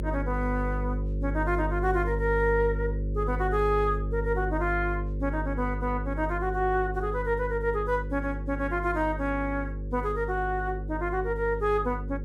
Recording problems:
hum; 50 Hz, harmonics up to 550 Hz, SNR 4 dB

